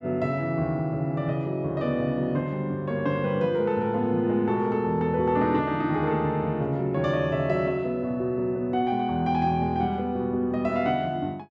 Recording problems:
none

